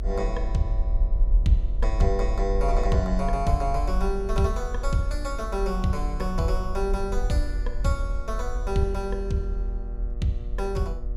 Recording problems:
hum; 60 Hz, harmonics up to 1.4 kHz, SNR 18 dB
rumble; below 44 Hz, strongest tone 40 Hz, SNR 1 dB

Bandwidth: 16.5 kHz